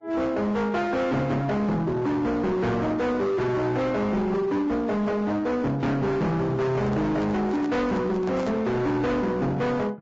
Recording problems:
lossy codec; Vorbis, log-spectral distance 2 dB, nothing above 7.3 kHz
distorted audio; hard clipping, signal-to-distortion ratio 7 dB
handling noise; from 6.5 to 8.5 s; peak -5 dB vs average level

